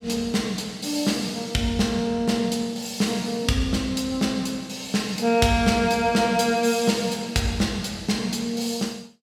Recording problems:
none

